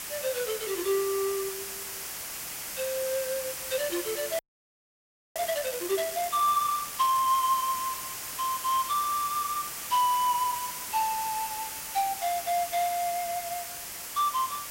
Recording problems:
background hiss; slope 0 dB per octave, SNR 6 dB
frozen audio; at 4.5 s for 1 s

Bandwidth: 16 kHz